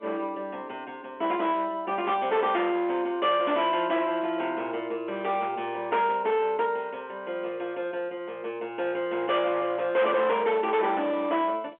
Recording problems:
telephone audio; 340 Hz to 3.5 kHz, G.711
distortion; hard clipping, signal-to-distortion ratio 11 dB

